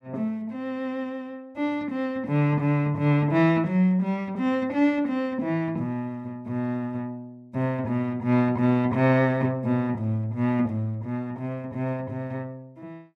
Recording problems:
none

